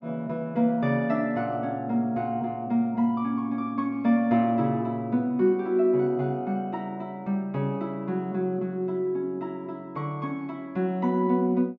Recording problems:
low-pass filter; nothing above 8 kHz

